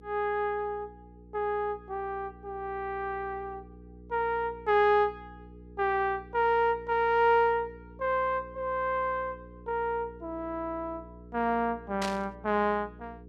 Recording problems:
hum; 60 Hz, harmonics up to 480 Hz, SNR 20 dB
static burst; at 12 s; peak -2 dB vs average level

